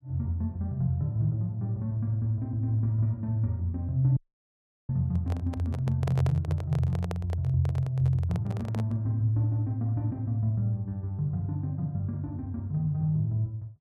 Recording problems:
audio cutting out; at 4 s for 0.5 s
microphone handling noise; from 5 to 9 s; peak -4 dB vs average level

